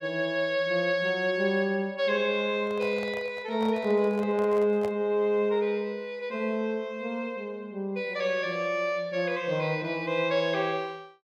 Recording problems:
microphone handling noise; from 2.5 to 5 s; peak -7 dB vs average level

